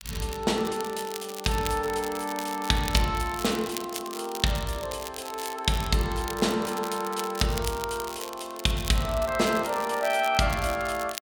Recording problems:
crackle; vinyl, SNR 11 dB

